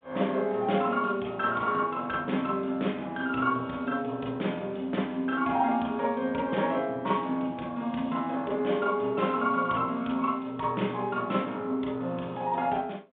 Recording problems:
telephone audio; 130 Hz to 3.7 kHz, G.726

